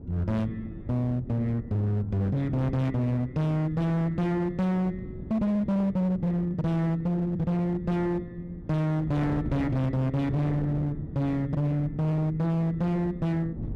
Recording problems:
distortion; hard clipping, uneven, signal-to-distortion ratio 8 dB
wind noise; below 250 Hz, SNR 13 dB

